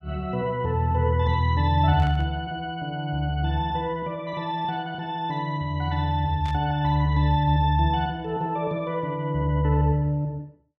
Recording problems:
burst of static; at 2 s and at 6.5 s; peak -13 dB vs average level

